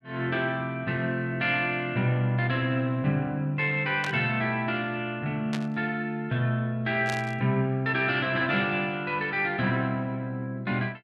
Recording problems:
burst of static; at 4 s, at 5.5 s and at 7 s; peak -4 dB vs average level

